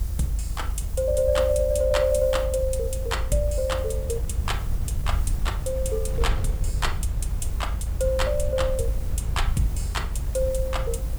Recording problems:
hiss; slope +5 dB per octave, SNR 19 dB
low-frequency rumble; below 78 Hz, strongest tone 52 Hz, SNR 3 dB
wind on the microphone; below 92 Hz, SNR 8 dB

